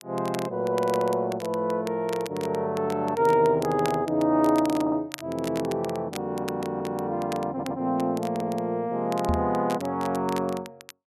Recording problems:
crackle; vinyl, SNR 17 dB
audio stuttering; 4 times, first at 4.5 s
knock on the microphone; at 9.5 s; peak +2 dB vs average level

